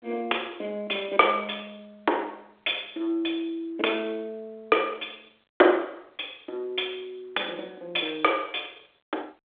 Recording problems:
telephone audio; 280 Hz to 3.8 kHz, G.726

